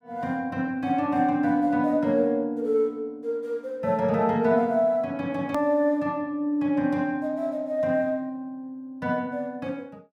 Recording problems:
hard cut with a click; at 5.5 s

